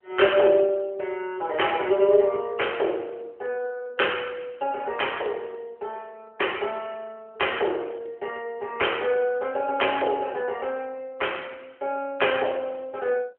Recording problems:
phone line; 320 Hz to 3.2 kHz, AMR-NB

